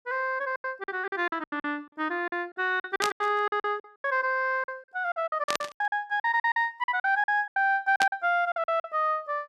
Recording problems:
packet loss; 17% of the sound replaced, filled with silence
burst of static; at 3 s, at 5.5 s and at 8 s; peak +4 dB vs average level

